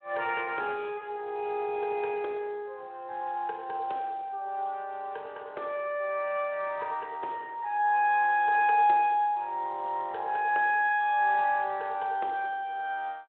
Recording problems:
phone line; 320 Hz to 3.7 kHz, Speex

